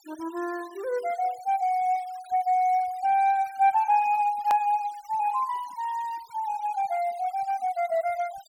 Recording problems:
noise reduction artefacts; signal-to-artefact ratio 24 dB
hard cut with a click; at 4.5 s

